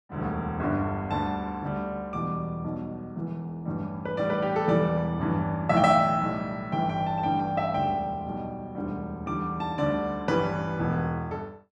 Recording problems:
none

